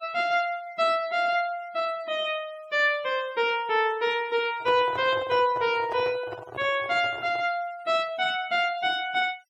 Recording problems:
noise reduction artefacts; signal-to-artefact ratio 22 dB
microphone handling noise; from 4.5 to 7.5 s; peak -6 dB vs average level

